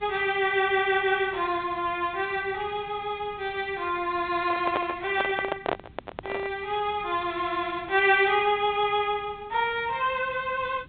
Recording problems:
treble cut off; nothing above 4 kHz
hiss; SNR 26 dB
microphone handling noise; from 4.5 to 6.5 s; peak +2 dB vs average level

